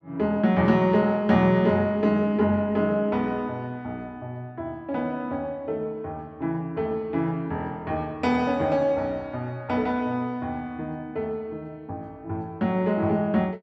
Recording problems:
none

